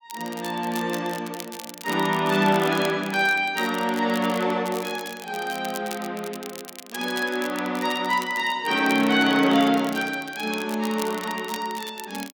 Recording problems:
crackle; vinyl, SNR 15 dB

